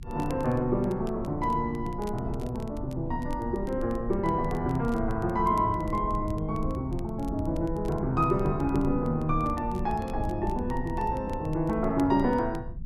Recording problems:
rumble; below 100 Hz, strongest tone 22 Hz, SNR 10 dB
crackling; vinyl, SNR 27 dB

